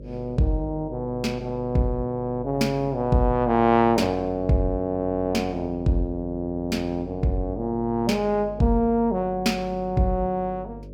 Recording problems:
electrical hum; 50 Hz, harmonics up to 600 Hz, SNR 16 dB

